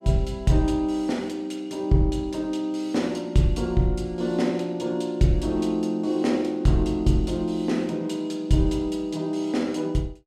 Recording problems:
none

